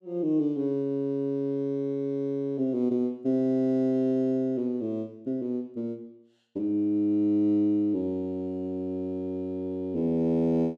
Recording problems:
none

